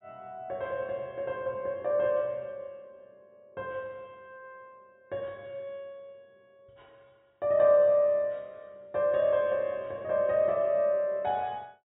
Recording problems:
treble missing; nothing above 4 kHz

